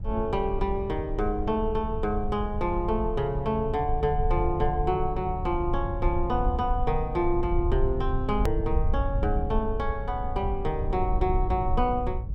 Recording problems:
low-frequency rumble; below 72 Hz, SNR 4 dB
click at an edit; at 8.5 s

